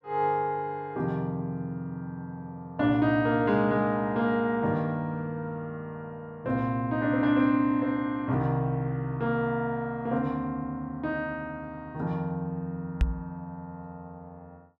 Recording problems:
knock on the microphone; at 13 s; peak +7 dB vs average level

